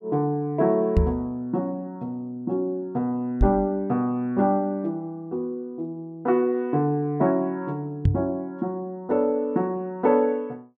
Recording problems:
microphone thump; at 1 s, at 3.5 s and at 8 s; peak +8 dB vs average level

